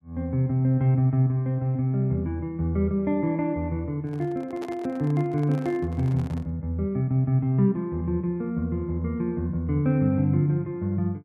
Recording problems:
handling noise; from 4 to 6.5 s; peak -10 dB vs average level

